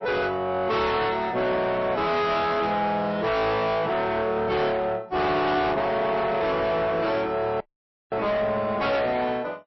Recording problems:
lossy codec; MP3, log-spectral distance 2 dB, nothing above 5.7 kHz
distortion; soft clipping, signal-to-distortion ratio 7 dB
dropout; at 7.5 s for 0.5 s

